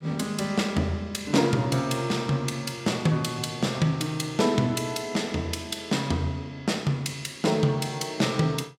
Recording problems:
none

